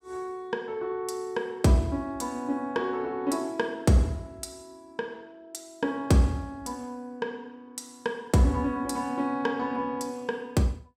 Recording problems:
none

